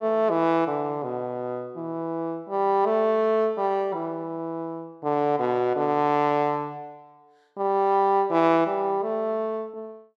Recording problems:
none

